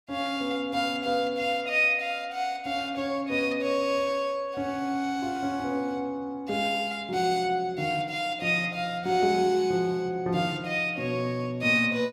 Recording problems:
none

